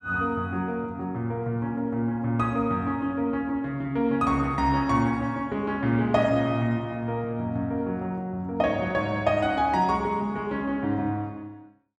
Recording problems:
none

